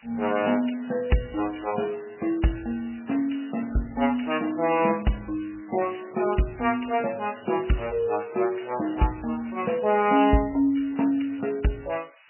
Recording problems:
lossy codec; MP3, log-spectral distance 10 dB, nothing above 2.9 kHz
hiss; SNR 26 dB

